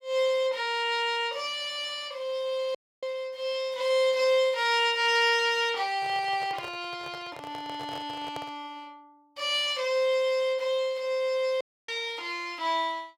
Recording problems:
audio cutting out; at 3 s and at 12 s
handling noise; from 6 to 8.5 s; peak -7 dB vs average level

